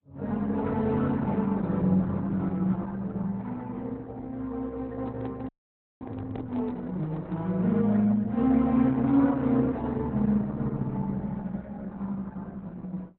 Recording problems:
lossy codec; Opus, log-spectral distance 2 dB, nothing above 4 kHz
handling noise; from 5 to 7.5 s; peak -11 dB vs average level
frozen audio; at 5.5 s for 0.5 s

